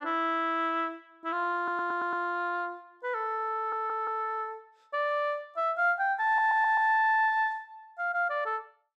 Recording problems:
audio stuttering; at 1.5 s, at 3.5 s and at 6.5 s

